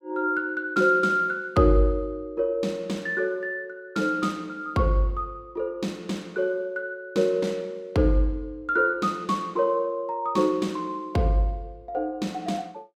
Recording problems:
none

